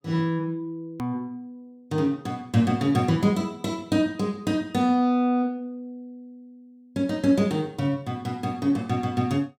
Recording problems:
hard cut with a click; at 1 s

